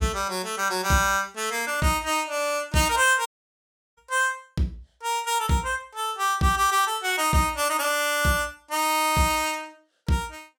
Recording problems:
audio cutting out; at 3.5 s for 0.5 s

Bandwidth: 17.5 kHz